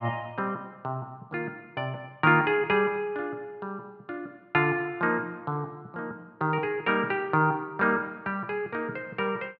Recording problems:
none

